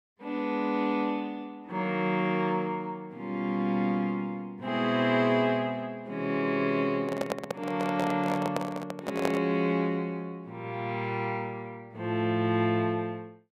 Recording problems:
microphone handling noise; from 7 to 9.5 s; peak +3 dB vs average level

